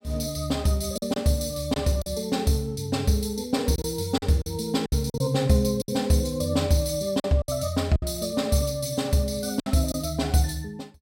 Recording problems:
packet loss; 6% of the sound replaced, filled with silence

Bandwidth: 16 kHz